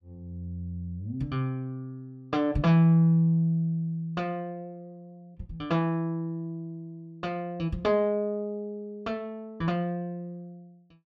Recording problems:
none

